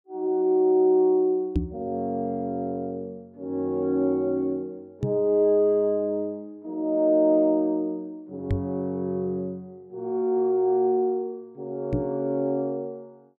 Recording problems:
knock on the microphone; 4 times, first at 1.5 s; peak +4 dB vs average level

